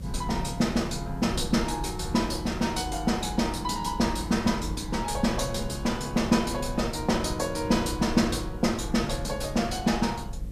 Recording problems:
electrical hum; 50 Hz, harmonics up to 550 Hz, SNR 24 dB
background hiss; slope -4 dB per octave, SNR 28 dB
rumble; below 120 Hz, SNR 11 dB

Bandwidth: 14.5 kHz